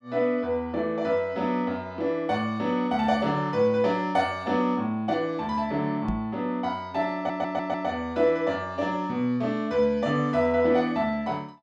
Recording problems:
microphone bump; at 6 s; peak 0 dB vs average level
audio stuttering; at 7 s

